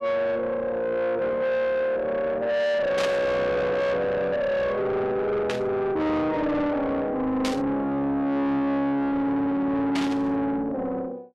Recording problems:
distorted audio; soft clipping, signal-to-distortion ratio 7 dB
burst of static; 4 times, first at 3 s; peak -1 dB vs average level

